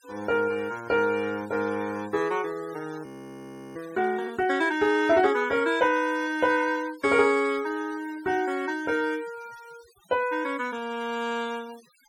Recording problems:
noise reduction artefacts; signal-to-artefact ratio 22 dB
frozen audio; at 3 s for 0.5 s

